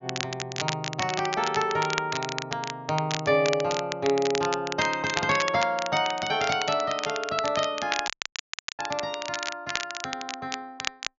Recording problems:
treble cut off; nothing above 7.1 kHz
crackling; vinyl, SNR 6 dB
audio cutting out; at 8 s for 0.5 s

